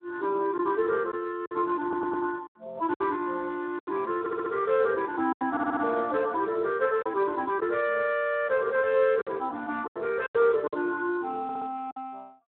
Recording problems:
phone line; 300 Hz to 3.7 kHz, Speex
packet loss; 6% of the sound replaced, filled with silence
audio stuttering; 4 times, first at 2 s

